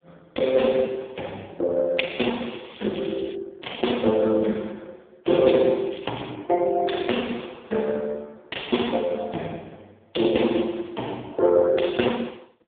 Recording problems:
telephone audio; 150 Hz to 3.6 kHz, AMR-NB
crackle; at 2.5 s and at 6 s; loose cable, SNR 18 dB

